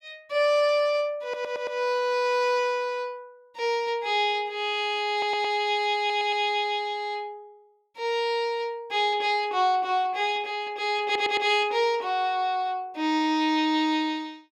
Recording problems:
stutter; 4 times, first at 1 s

